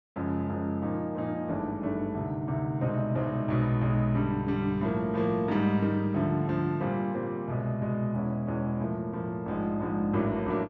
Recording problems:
none

